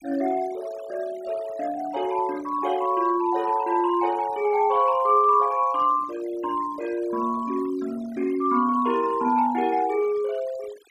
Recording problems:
denoising artefacts; signal-to-artefact ratio 21 dB

